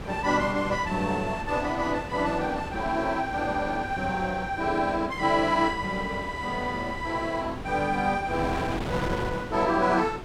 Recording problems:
wind on the microphone; below 850 Hz, SNR 10 dB

